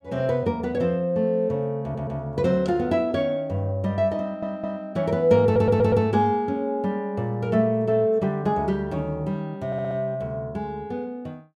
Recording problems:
audio stuttering; 4 times, first at 2 s

